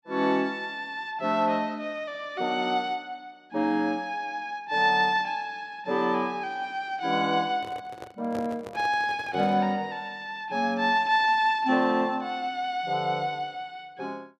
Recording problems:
handling noise; from 7.5 to 9.5 s; peak -7 dB vs average level

